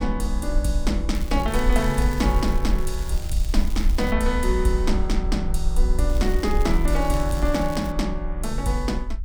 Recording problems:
rumble; below 52 Hz, SNR 1 dB
crackle; from 1 to 4 s and from 6 to 8 s; loose cable, SNR 17 dB

